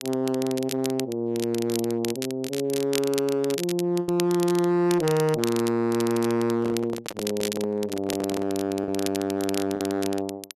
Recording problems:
distorted audio; hard clipping, signal-to-distortion ratio 11 dB
crackling; vinyl, SNR 11 dB
lost packets; 1.6% of the sound replaced, filled with the last packet
handling noise; from 6.5 to 8.5 s; peak -3 dB vs average level

